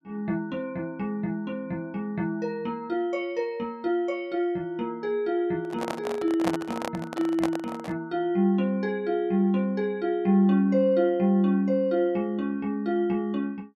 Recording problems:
handling noise; from 5.5 to 8 s; peak +2 dB vs average level

